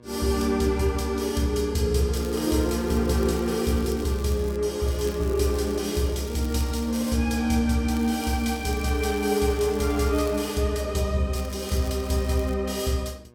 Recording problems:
hum; 60 Hz, harmonics up to 1.7 kHz, SNR 28 dB
crackle; 4 times, first at 2 s; loose cable, SNR 20 dB

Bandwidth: 17 kHz